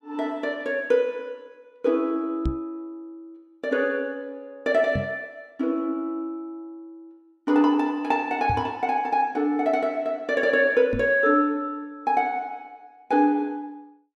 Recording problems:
microphone bump; 4 times, first at 2.5 s; peak +1 dB vs average level

